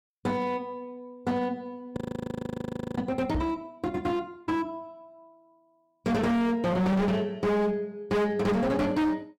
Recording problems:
distorted audio; hard clipping, signal-to-distortion ratio 6 dB
frozen audio; at 2 s for 1 s
microphone thump; at 3.5 s; peak +2 dB vs average level

